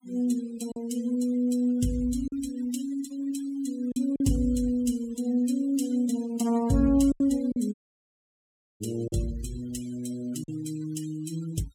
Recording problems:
noise reduction artefacts; signal-to-artefact ratio 19 dB
lost packets; 4% of the sound replaced, filled with silence
dropout; at 7.5 s for 1 s

